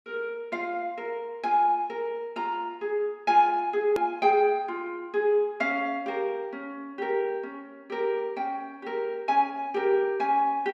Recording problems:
edit click; at 4 s

